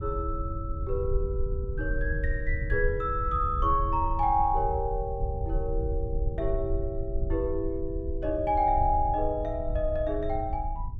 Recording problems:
low-frequency rumble; below 74 Hz, SNR 4 dB

